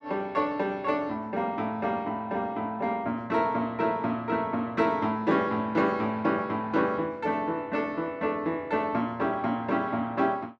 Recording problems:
none

